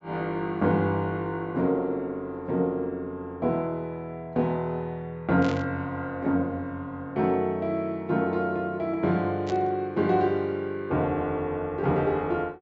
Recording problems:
low-pass filter; nothing above 8 kHz
burst of static; at 5.5 s and at 9.5 s; peak -7 dB vs average level

